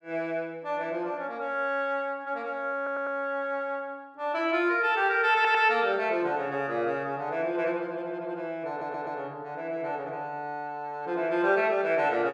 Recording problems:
stutter; at 3 s, at 5.5 s and at 8.5 s

